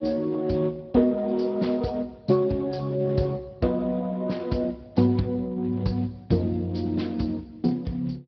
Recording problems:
treble cut off; nothing above 5.3 kHz
lossy codec; Speex, log-spectral distance 3 dB

